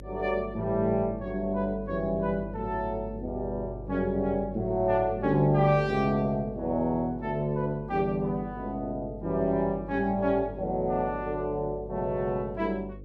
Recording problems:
hum; 50 Hz, harmonics up to 550 Hz, SNR 14 dB

